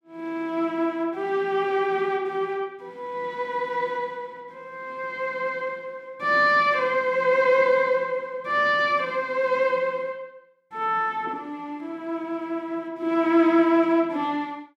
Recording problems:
none

